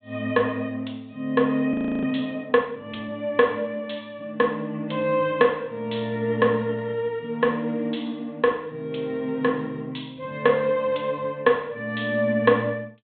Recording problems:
low-pass filter; nothing above 4 kHz
frozen audio; at 1.5 s

